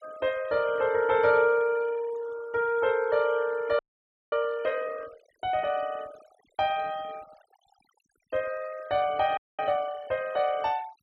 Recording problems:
denoising artefacts; signal-to-artefact ratio 22 dB
audio freezing; at 4 s for 0.5 s and at 9.5 s

